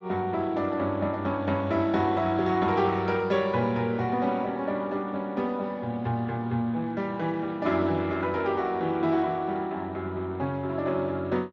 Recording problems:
codec artefacts; Speex, log-spectral distance 2 dB

